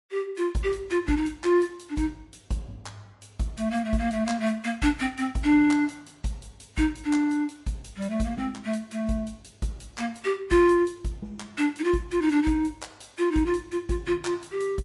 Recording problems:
lossy codec; MP3, log-spectral distance 3 dB, nothing above 11.3 kHz

